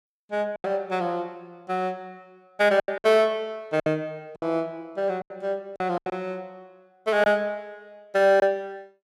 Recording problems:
packet loss; 8% of the sound replaced, filled with silence

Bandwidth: 15 kHz